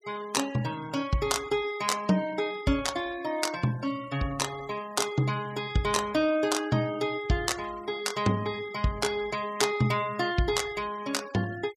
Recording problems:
noise reduction artefacts; signal-to-artefact ratio 19 dB

